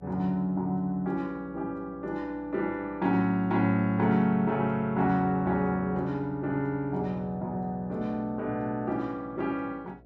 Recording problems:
electrical hum; 60 Hz, harmonics up to 720 Hz, SNR 25 dB

